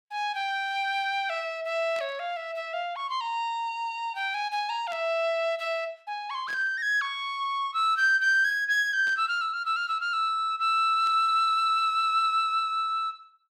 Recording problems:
static burst; 5 times, first at 2 s; peak -15 dB vs average level

